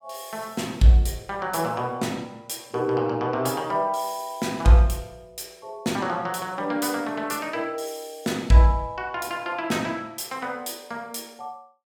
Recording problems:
none

